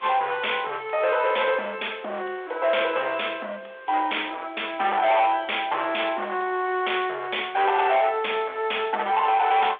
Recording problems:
phone line; 340 Hz to 3.5 kHz, G.726
distorted audio; hard clipping, signal-to-distortion ratio 9 dB
background hiss; SNR 26 dB

